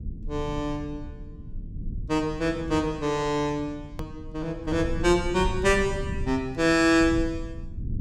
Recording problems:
low-frequency rumble; below 120 Hz, SNR 11 dB
edit click; at 4 s

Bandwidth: 16 kHz